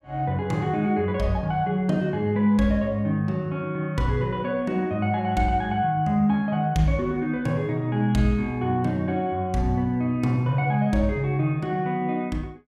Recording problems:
none

